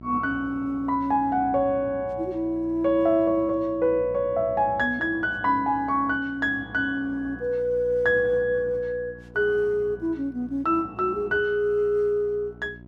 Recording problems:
mains hum; 60 Hz, harmonics up to 720 Hz, SNR 20 dB

